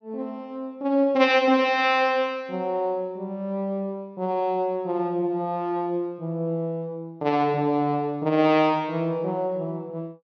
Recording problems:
treble cut off; nothing above 6.4 kHz

